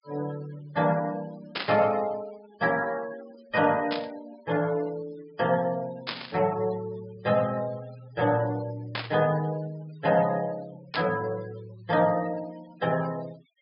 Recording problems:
treble missing; nothing above 5.5 kHz
denoising artefacts; signal-to-artefact ratio 20 dB
static burst; 5 times, first at 1.5 s; peak +1 dB vs average level

